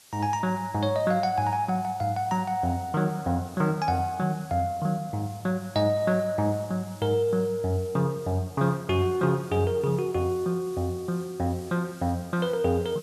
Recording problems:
hiss; slope +1 dB per octave, SNR 23 dB

